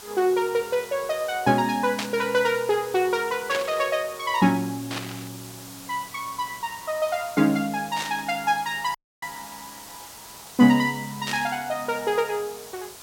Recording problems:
background hiss; SNR 16 dB
burst of static; 5 times, first at 2 s; peak -1 dB vs average level
dropout; at 9 s

